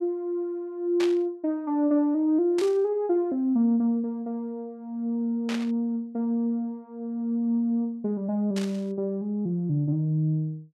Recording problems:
burst of static; 4 times, first at 1 s; peak -4 dB vs average level

